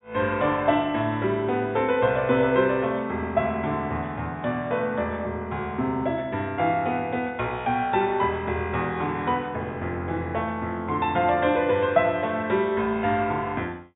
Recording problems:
treble missing; nothing above 4 kHz

